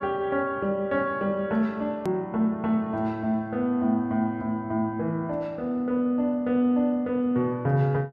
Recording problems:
edit click; at 2 s

